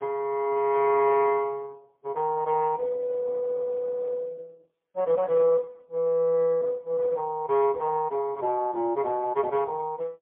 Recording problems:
phone line; 220 Hz to 2.6 kHz, AMR-NB, then MP3

